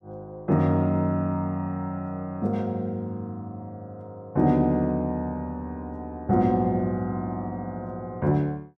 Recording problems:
none

